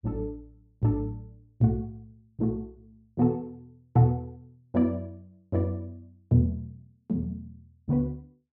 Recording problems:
none

